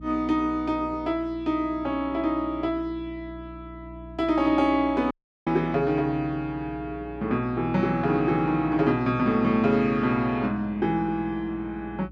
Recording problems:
electrical hum; 60 Hz, harmonics up to 300 Hz, SNR 19 dB
audio cutting out; at 5 s

